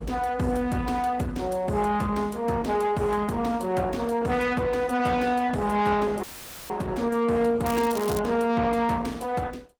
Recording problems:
codec artefacts; Opus, log-spectral distance 3 dB, nothing above 19 kHz
distortion; soft clipping, signal-to-distortion ratio 11 dB
audio cutting out; at 6 s; filled with static
crackle; at 7.5 s; loose cable, SNR 13 dB

